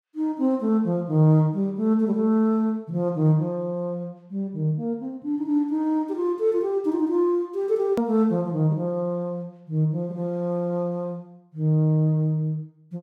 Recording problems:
click at an edit; at 8 s

